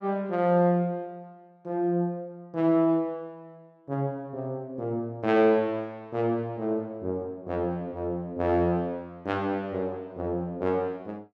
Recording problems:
none

